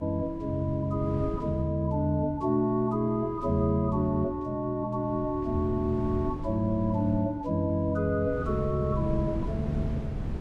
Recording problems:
hum; 60 Hz, harmonics up to 660 Hz, SNR 25 dB
wind noise; below 200 Hz, SNR 10 dB

